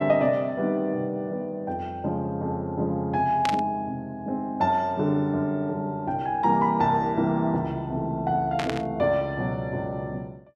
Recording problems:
static burst; at 3.5 s and at 8.5 s; peak 0 dB vs average level

